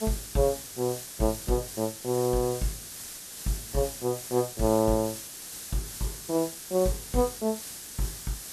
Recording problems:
background hiss; SNR 8 dB

